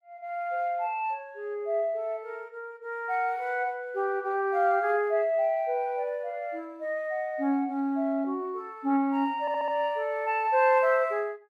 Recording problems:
stutter; at 9.5 s

